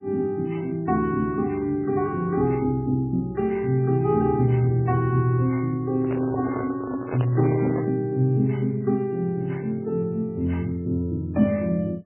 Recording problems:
lossy compression; MP3, log-spectral distance 2 dB, nothing above 3 kHz
handling noise; from 6 to 8 s; peak -3 dB vs average level

